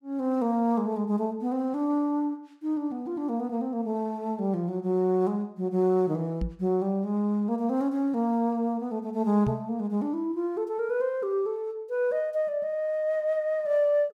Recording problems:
knock on the microphone; at 6.5 s and at 9.5 s; peak +1 dB vs average level

